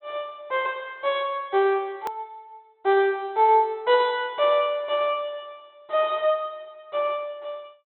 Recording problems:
treble missing; nothing above 3.9 kHz
hard cut with a click; at 2 s

